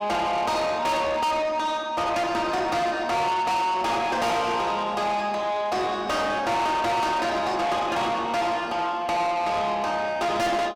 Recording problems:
distortion; soft clipping, signal-to-distortion ratio 7 dB

